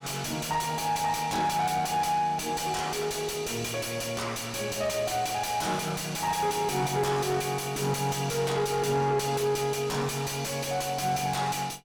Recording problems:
distorted audio; soft clipping, signal-to-distortion ratio 5 dB

